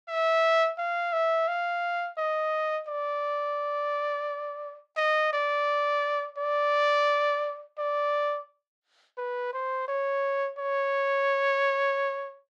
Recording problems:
none

